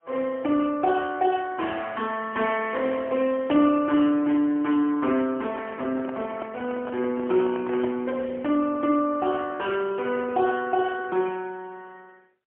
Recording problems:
phone line; 220 Hz to 3.2 kHz, AMR-NB, then MP3
handling noise; from 5.5 to 8 s; peak -7 dB vs average level

